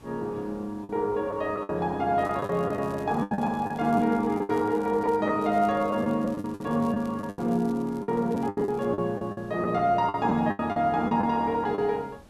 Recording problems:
background hiss; slope -6 dB per octave, SNR 25 dB
packet loss; 11% of the sound replaced, filled with the last packet
crackling; from 2 to 5 s and from 5.5 to 9 s; loose cable, SNR 29 dB

